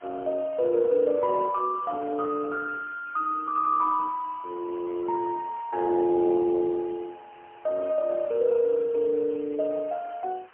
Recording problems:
phone line; 300 Hz to 2 kHz, AMR-NB, then MP3
background hiss; SNR 27 dB

